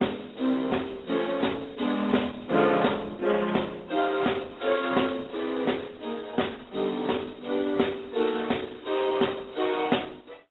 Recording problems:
codec artefacts; AAC, then Opus, log-spectral distance 10 dB, nothing above 3.8 kHz

